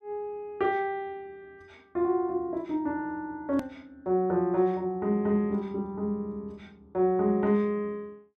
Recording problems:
click at an edit; at 3.5 s

